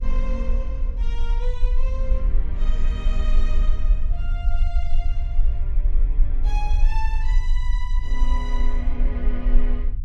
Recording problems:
mains hum; 50 Hz, harmonics up to 350 Hz, SNR 18 dB
low-frequency rumble; below 40 Hz, strongest tone 22 Hz, SNR -12 dB

